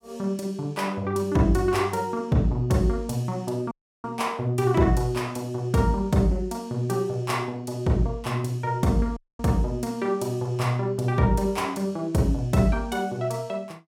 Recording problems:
audio cutting out; at 3.5 s and at 9 s

